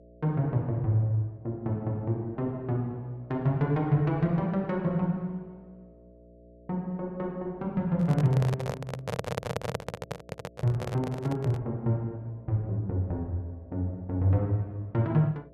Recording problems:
hum; 60 Hz, harmonics up to 660 Hz, SNR 25 dB
handling noise; from 8 to 12 s; peak +1 dB vs average level
stutter; at 9 s

